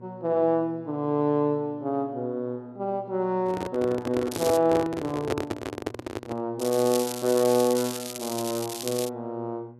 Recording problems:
electrical hum; 60 Hz, harmonics up to 960 Hz, SNR 22 dB
microphone handling noise; from 3.5 to 6.5 s; peak +3 dB vs average level
crackle; at 4.5 s and from 6.5 to 9 s; loose cable, SNR 9 dB

